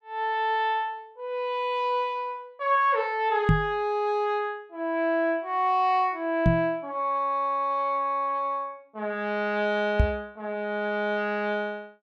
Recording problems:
microphone bump; at 3.5 s, at 6.5 s and at 10 s; peak +9 dB vs average level

